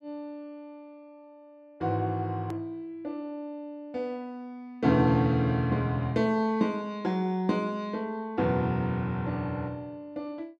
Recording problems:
click at an edit; at 2.5 s

